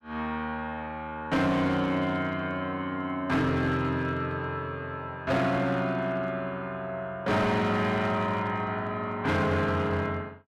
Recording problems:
distorted audio; hard clipping, signal-to-distortion ratio 12 dB

